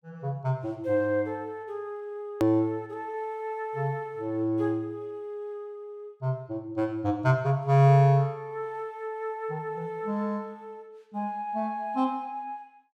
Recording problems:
click at an edit; at 2.5 s

